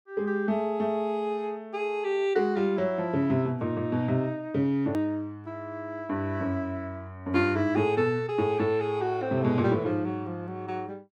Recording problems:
click at an edit; at 5 s

